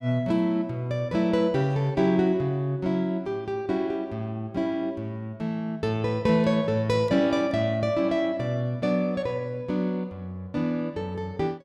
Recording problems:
none

